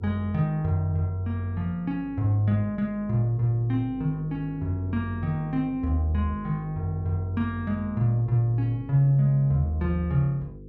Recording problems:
electrical hum; 50 Hz, harmonics up to 500 Hz, SNR 17 dB

